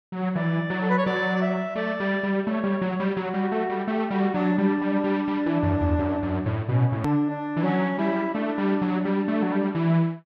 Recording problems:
click at an edit; at 7 s

